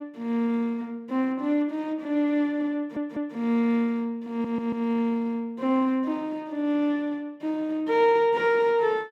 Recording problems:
stutter; at 3 s and at 4.5 s

